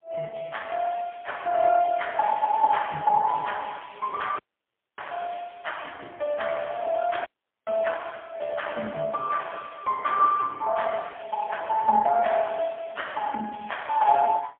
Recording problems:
phone line; 300 Hz to 3.3 kHz, AMR-NB, then MP3
dropout; at 4.5 s for 0.5 s and at 7.5 s

